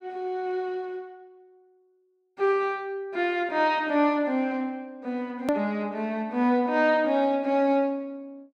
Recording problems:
edit click; at 5.5 s

